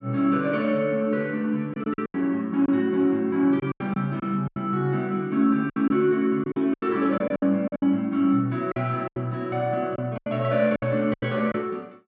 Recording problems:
lost packets; 10% of the sound replaced, filled with silence

